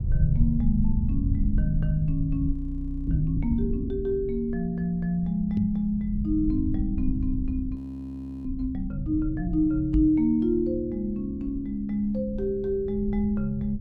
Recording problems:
low-frequency rumble; below 88 Hz, SNR 6 dB
audio freezing; at 2.5 s for 0.5 s and at 8 s for 0.5 s
microphone bump; at 5.5 s and at 10 s; peak +4 dB vs average level

